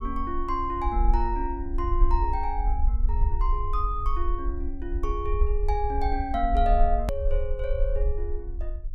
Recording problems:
rumble; below 52 Hz, SNR -1 dB
click at an edit; at 7 s

